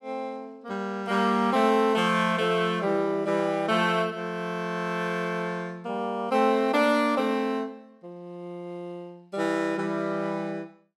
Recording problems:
none

